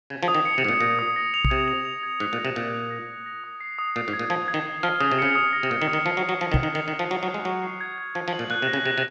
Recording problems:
microphone bump; at 1.5 s and at 6.5 s; peak +6 dB vs average level

